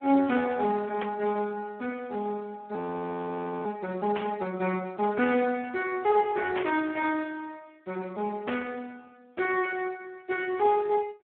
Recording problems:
phone line; 190 Hz to 2.8 kHz, Speex
static burst; 4 times, first at 1 s; peak -1 dB vs average level
frozen audio; at 3 s for 1 s

